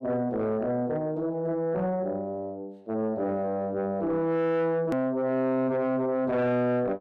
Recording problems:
distortion; soft clipping, signal-to-distortion ratio 10 dB
edit click; at 5 s

